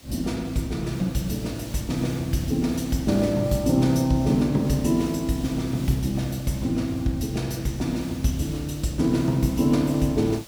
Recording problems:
background hiss; SNR 19 dB

